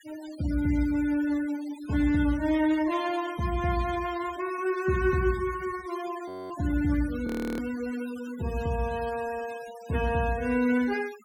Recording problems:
denoising artefacts; signal-to-artefact ratio 17 dB
audio freezing; at 6.5 s and at 7.5 s

